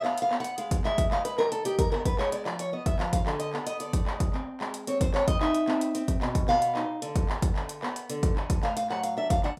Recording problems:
none

